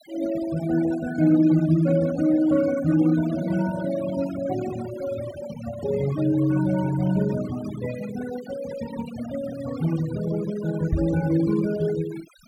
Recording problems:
denoising artefacts; signal-to-artefact ratio 14 dB
microphone bump; at 11 s; peak +2 dB vs average level

